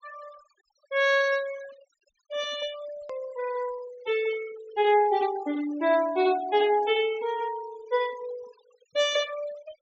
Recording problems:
treble cut off; nothing above 7.6 kHz
denoising artefacts; signal-to-artefact ratio 18 dB
edit click; at 3 s

